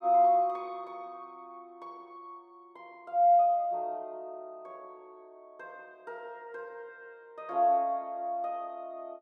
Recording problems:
none

